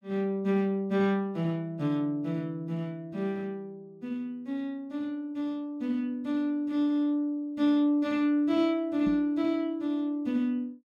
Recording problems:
microphone bump; at 9 s; peak -1 dB vs average level

